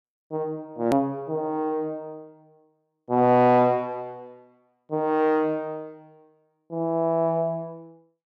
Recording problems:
edit click; at 1 s

